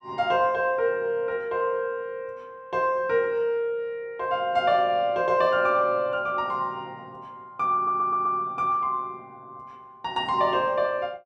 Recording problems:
stutter; at 8 s

